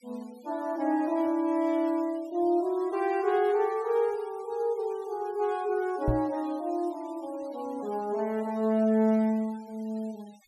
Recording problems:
denoising artefacts; signal-to-artefact ratio 26 dB
microphone thump; at 6 s; peak +4 dB vs average level

